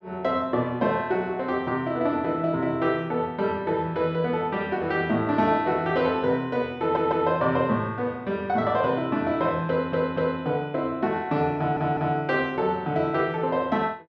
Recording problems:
stutter; at 7 s, at 9.5 s and at 12 s

